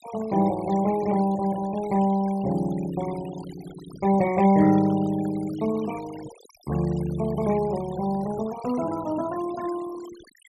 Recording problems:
noise reduction artefacts; signal-to-artefact ratio 19 dB

